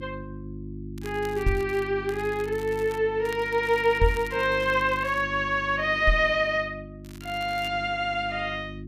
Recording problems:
mains hum; 50 Hz, harmonics up to 350 Hz, SNR 14 dB
crackling; 4 times, first at 1 s; loose cable, SNR 23 dB
microphone thump; at 1.5 s, at 4 s and at 6 s; peak +5 dB vs average level

